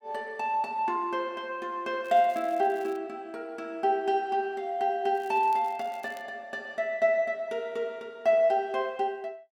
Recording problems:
crackling; at 2 s and from 5 to 6 s; loose cable, SNR 27 dB

